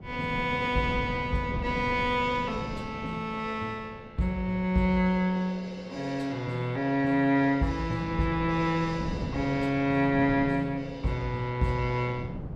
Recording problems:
wind on the microphone; below 260 Hz, SNR 10 dB

